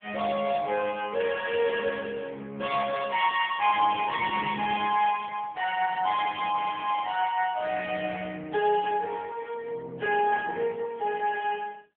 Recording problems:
phone line; 280 Hz to 3.3 kHz, AMR-NB

